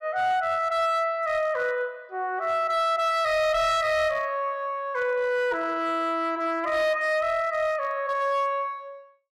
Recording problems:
distorted audio; hard clipping, signal-to-distortion ratio 12 dB

